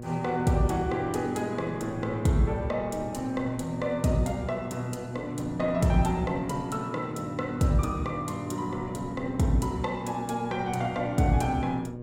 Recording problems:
electrical hum; 60 Hz, harmonics up to 720 Hz, SNR 11 dB
wind noise; below 300 Hz, SNR 19 dB

